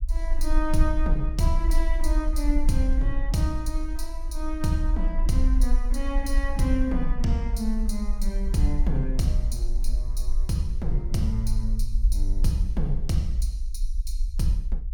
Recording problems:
low-frequency rumble; below 44 Hz, strongest tone 20 Hz, SNR 0 dB

